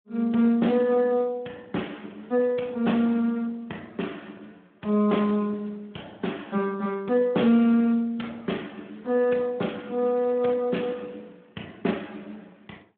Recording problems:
telephone audio; 130 Hz to 3.5 kHz, Speex

